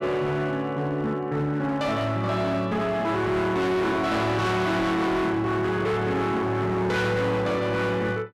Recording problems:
distorted audio; hard clipping, signal-to-distortion ratio 7 dB

